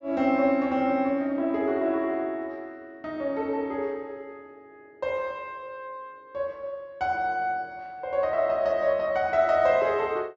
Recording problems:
low-pass filter; nothing above 7.3 kHz

